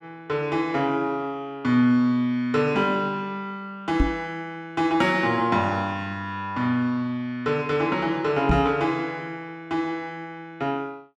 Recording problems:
microphone thump; at 4 s and at 8.5 s; peak +6 dB vs average level

